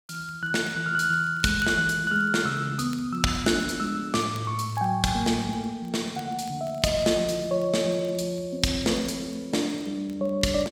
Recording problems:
crackle; vinyl, SNR 29 dB

